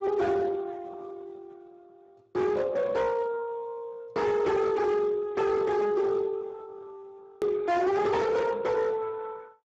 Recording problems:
codec artefacts; Speex, log-spectral distance 3 dB, nothing above 13.1 kHz
distorted audio; hard clipping, signal-to-distortion ratio 8 dB
edit click; at 7.5 s

